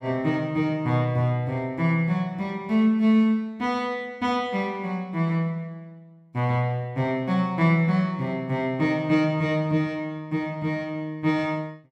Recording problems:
none

